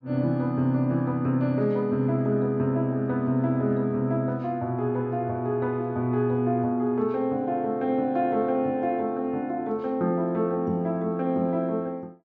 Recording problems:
treble cut off; nothing above 8 kHz

